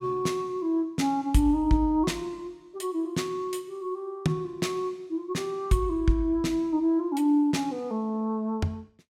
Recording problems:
none

